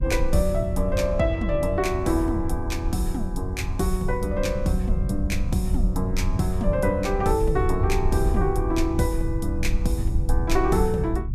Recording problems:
low-frequency rumble; below 76 Hz, SNR 3 dB

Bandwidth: 14.5 kHz